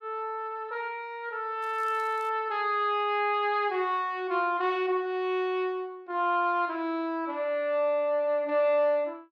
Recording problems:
crackling; at 1.5 s; loose cable, SNR 29 dB

